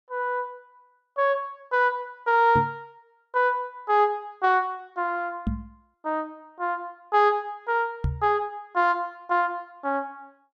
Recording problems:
microphone bump; at 2.5 s, at 5.5 s and at 8 s; peak +2 dB vs average level

